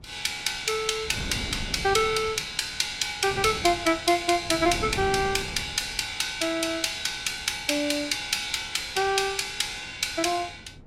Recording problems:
wind noise; below 280 Hz, SNR 16 dB

